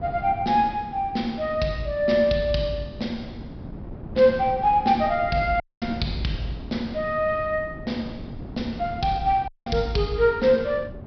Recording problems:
treble missing; nothing above 5.5 kHz
wind noise; below 270 Hz, SNR 15 dB
audio cutting out; at 5.5 s and at 9.5 s

